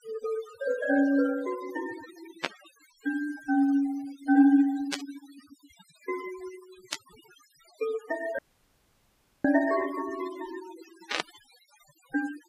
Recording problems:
noise reduction artefacts; signal-to-artefact ratio 15 dB
static burst; 4 times, first at 2.5 s; peak +3 dB vs average level
audio cutting out; at 8.5 s for 1 s

